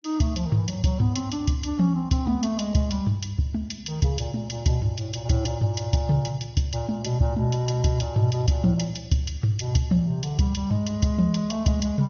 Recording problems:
low-pass filter; nothing above 6.2 kHz
codec artefacts; AAC, log-spectral distance 3 dB

